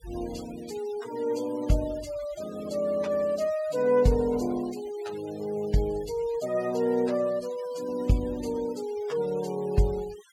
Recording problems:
noise reduction artefacts; signal-to-artefact ratio 19 dB

